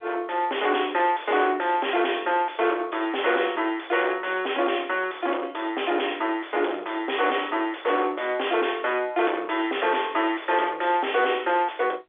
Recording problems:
phone line; 300 Hz to 3.5 kHz, G.711
distorted audio; soft clipping, signal-to-distortion ratio 6 dB

